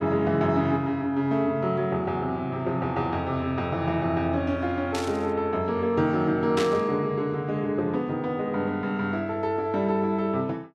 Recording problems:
static burst; at 5 s and at 6.5 s; peak -2 dB vs average level

